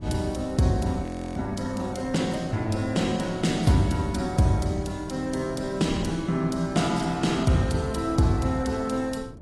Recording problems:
lossy compression; AAC, log-spectral distance 3 dB, nothing above 11.3 kHz
wind on the microphone; below 220 Hz, SNR 17 dB
frozen audio; at 1 s

